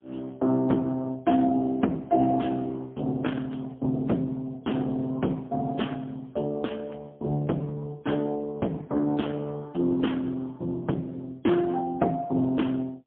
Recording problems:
telephone audio; 110 Hz to 3.4 kHz, AMR-NB, then MP3

